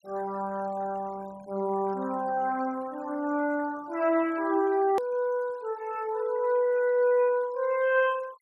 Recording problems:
noise reduction artefacts; signal-to-artefact ratio 24 dB
hard cut with a click; at 5 s

